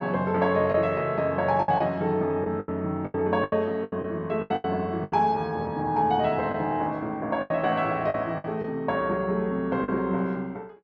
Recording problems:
lost packets; 9% of the sound replaced, filled with the last packet

